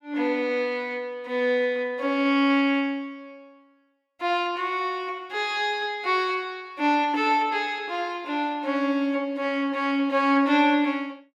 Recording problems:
none

